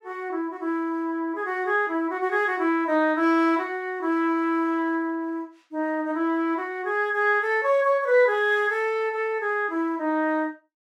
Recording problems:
none

